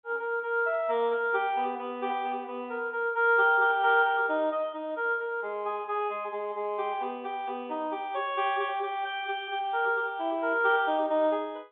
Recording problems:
telephone audio; 260 Hz to 3.7 kHz, G.711

